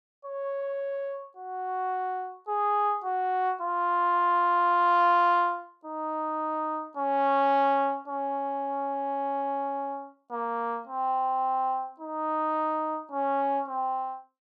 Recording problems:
none

